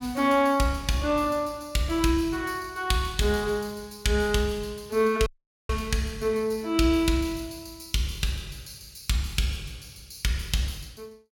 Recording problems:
dropout; at 5.5 s

